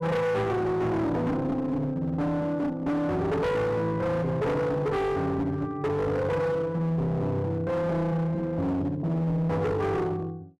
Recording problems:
distorted audio; hard clipping, uneven, signal-to-distortion ratio 7 dB

